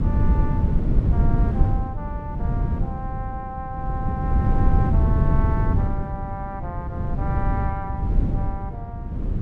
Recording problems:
electrical hum; 60 Hz, harmonics up to 480 Hz, SNR 20 dB
wind noise; below 140 Hz, SNR -10 dB

